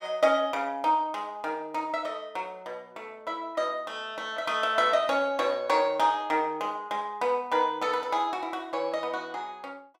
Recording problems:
none

